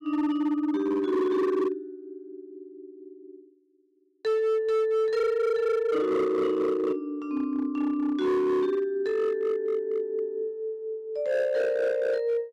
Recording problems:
distorted audio; hard clipping, signal-to-distortion ratio 10 dB

